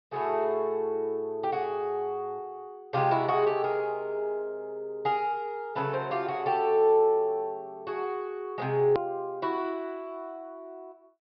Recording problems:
treble cut off; nothing above 5.5 kHz
edit click; at 9 s

